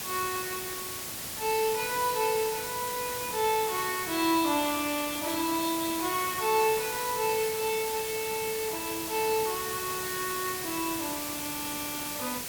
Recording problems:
background hiss; slope -1 dB per octave, SNR 3 dB

